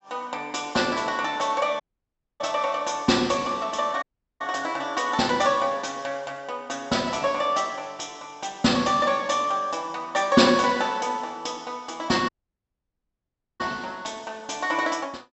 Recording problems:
treble cut off; nothing above 7.7 kHz
audio cutting out; at 2 s for 0.5 s, at 4 s and at 12 s for 1.5 s

